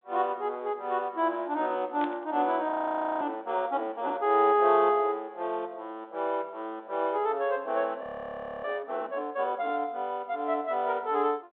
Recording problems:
phone line; 260 Hz to 3.7 kHz, G.726
burst of static; at 2 s; peak -9 dB vs average level
frozen audio; at 2.5 s for 0.5 s and at 8 s for 0.5 s

